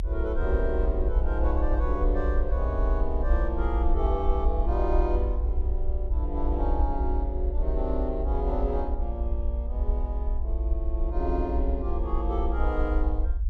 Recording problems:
low-frequency rumble; below 58 Hz, SNR -3 dB

